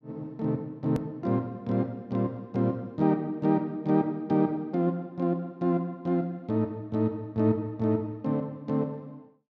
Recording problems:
edit click; at 1 s

